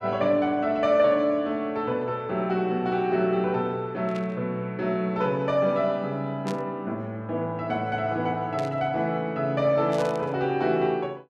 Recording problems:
static burst; 4 times, first at 4 s; peak -10 dB vs average level

